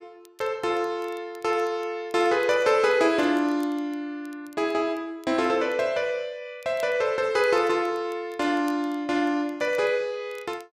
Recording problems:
crackle; vinyl, SNR 30 dB

